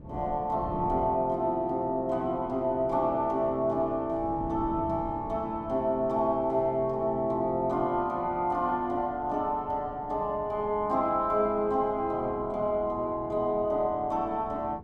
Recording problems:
wind on the microphone; below 270 Hz, SNR 16 dB

